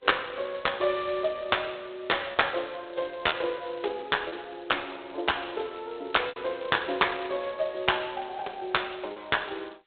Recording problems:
telephone audio; 300 Hz to 3.8 kHz, G.726
lost packets; 2% of the sound replaced, filled with repeated pitch periods

